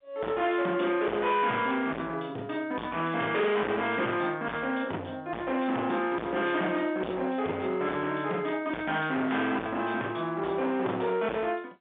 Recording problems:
phone line; 240 Hz to 3.6 kHz, G.711
distorted audio; hard clipping, signal-to-distortion ratio 7 dB

